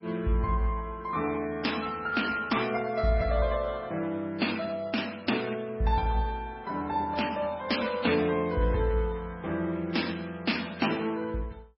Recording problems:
lossy codec; MP3, then MP3, log-spectral distance 3 dB, nothing above 5.5 kHz

